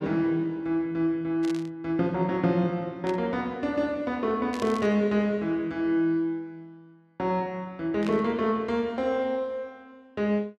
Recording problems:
static burst; 4 times, first at 1.5 s; peak -8 dB vs average level

